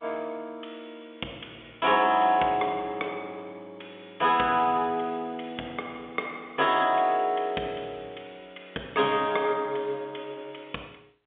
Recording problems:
phone line; 260 Hz to 3.6 kHz, G.711

